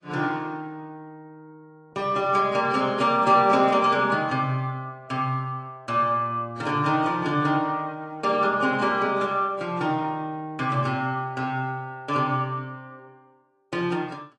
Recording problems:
codec artefacts; AAC, log-spectral distance 2 dB, nothing above 11 kHz

